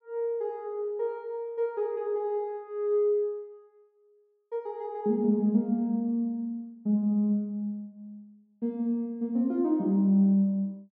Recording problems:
none

